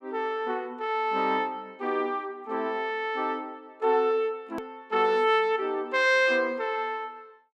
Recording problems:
hard cut with a click; at 4.5 s

